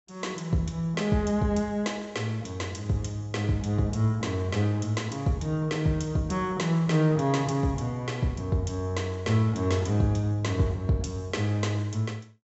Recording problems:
treble cut off; nothing above 7.7 kHz

